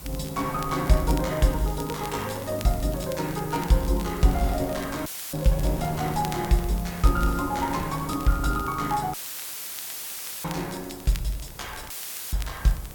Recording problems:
hiss; slope +1 dB per octave, SNR 15 dB
wind on the microphone; below 470 Hz, SNR 15 dB
crackle; vinyl, SNR 19 dB
audio cutting out; at 5 s, at 9 s for 1.5 s and at 12 s; filled with static

